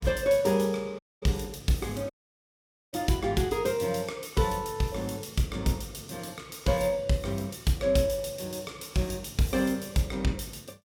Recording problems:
dropout; at 1 s and at 2 s for 1 s

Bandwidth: 17 kHz